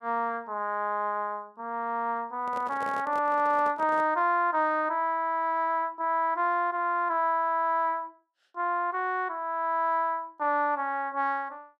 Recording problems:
handling noise; from 2.5 to 4 s; peak -8 dB vs average level

